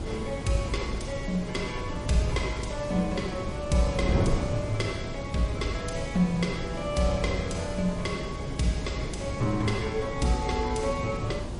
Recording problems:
codec artefacts; MP3, log-spectral distance 3 dB, nothing above 10.4 kHz
hiss; SNR 18 dB
wind on the microphone; below 320 Hz, SNR 5 dB

